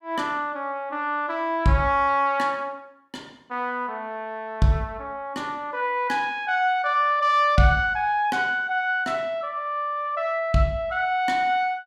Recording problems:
none

